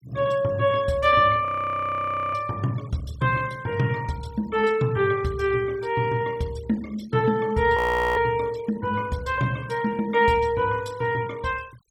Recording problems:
noise reduction artefacts; signal-to-artefact ratio 24 dB
frozen audio; at 1.5 s for 1 s and at 8 s

